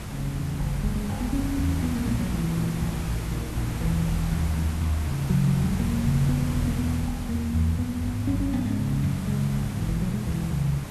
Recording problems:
background hiss; slope -4 dB per octave, SNR 8 dB

